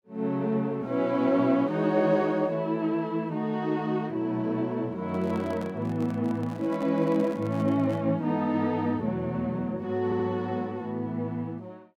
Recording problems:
microphone handling noise; from 5 to 8 s; peak -9 dB vs average level
stutter; at 10 s

